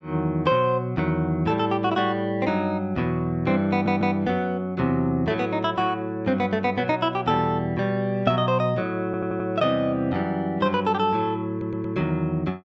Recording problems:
low-pass filter; nothing above 8 kHz
stutter; at 3.5 s, at 9 s and at 12 s

